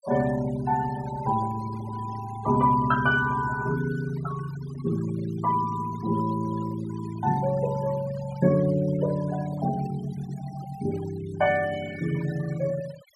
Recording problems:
denoising artefacts; signal-to-artefact ratio 16 dB

